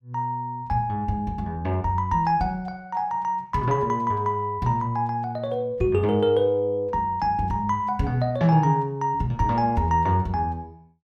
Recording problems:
none

